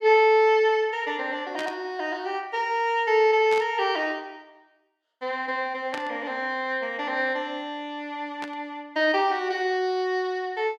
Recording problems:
burst of static; 4 times, first at 1.5 s; peak -6 dB vs average level

